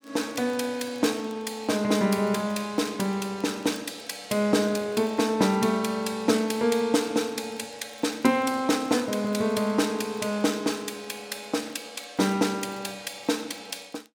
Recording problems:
crackling; vinyl, SNR 30 dB

